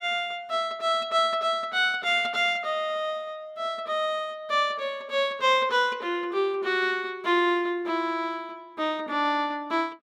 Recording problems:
none

